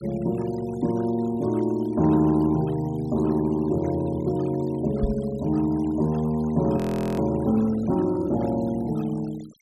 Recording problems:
noise reduction artefacts; signal-to-artefact ratio 23 dB
microphone bump; at 5 s; peak 0 dB vs average level
audio freezing; at 7 s

